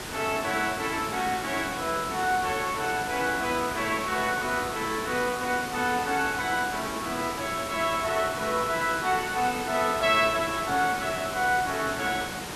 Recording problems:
hiss; slope -3 dB per octave, SNR 7 dB

